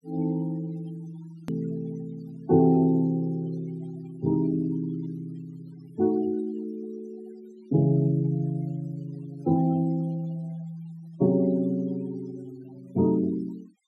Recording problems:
noise reduction artefacts; signal-to-artefact ratio 25 dB
edit click; at 1.5 s

